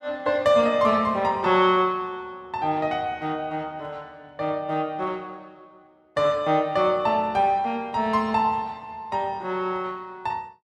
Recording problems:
none

